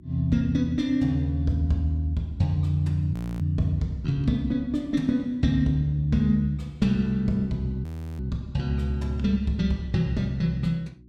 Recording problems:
mains hum; 60 Hz, harmonics up to 360 Hz, SNR 24 dB
frozen audio; at 3 s and at 8 s

